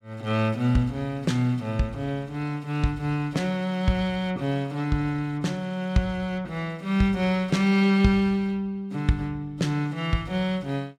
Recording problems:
none

